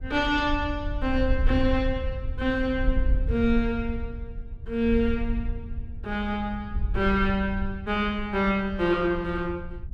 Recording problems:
wind noise; below 68 Hz, SNR 6 dB

